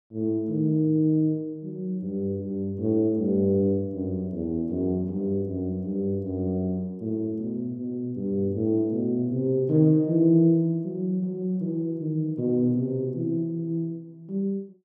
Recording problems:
none

